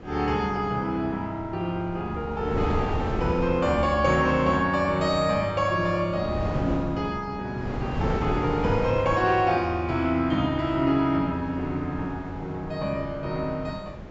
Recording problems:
treble cut off; nothing above 8 kHz
wind noise; below 470 Hz, SNR 9 dB

